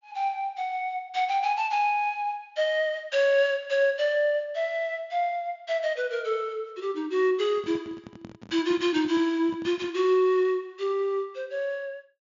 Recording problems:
treble missing; nothing above 7.1 kHz
handling noise; from 7.5 to 10 s; peak -12 dB vs average level

